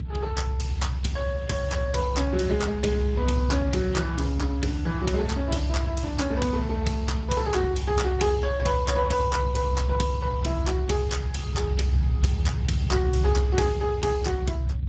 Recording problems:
lossy compression; Speex, log-spectral distance 3 dB, nothing above 7.6 kHz
rumble; below 100 Hz, strongest tone 66 Hz, SNR 1 dB

